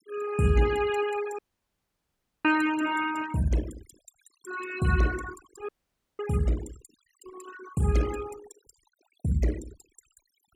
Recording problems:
denoising artefacts; signal-to-artefact ratio 15 dB
dropout; at 1.5 s for 1 s and at 5.5 s for 0.5 s

